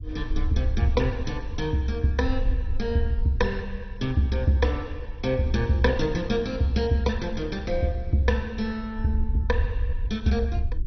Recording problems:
lossy codec; MP2, log-spectral distance 2 dB, nothing above 6 kHz
rumble; below 66 Hz, SNR 7 dB

